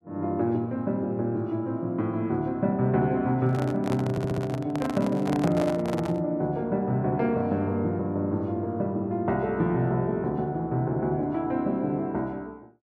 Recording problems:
handling noise; from 3.5 to 6 s; peak -1 dB vs average level
stutter; at 4 s

